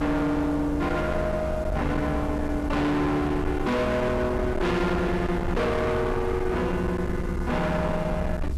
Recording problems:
distortion; hard clipping, uneven, signal-to-distortion ratio 6 dB
background hiss; slope -1 dB per octave, SNR 27 dB
low-frequency rumble; below 260 Hz, SNR 6 dB

